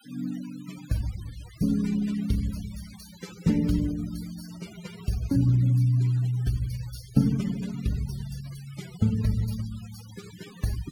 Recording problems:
denoising artefacts; signal-to-artefact ratio 19 dB

